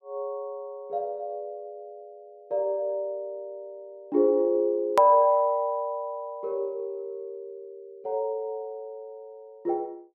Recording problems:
edit click; at 5 s

